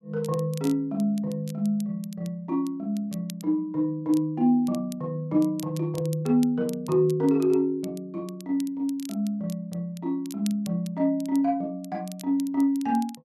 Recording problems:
crackling; vinyl, SNR 21 dB

